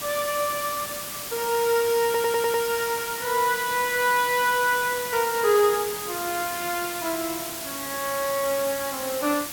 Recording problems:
background hiss; slope -1 dB per octave, SNR 6 dB
stutter; at 2 s

